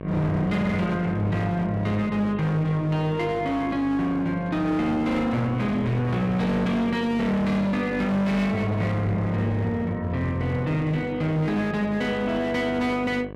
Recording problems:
distortion; hard clipping, uneven, signal-to-distortion ratio 8 dB
electrical hum; 50 Hz, harmonics up to 2.3 kHz, SNR 13 dB

